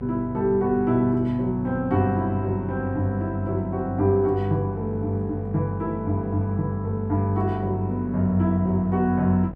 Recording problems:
hum; 50 Hz, harmonics up to 1.1 kHz, SNR 14 dB

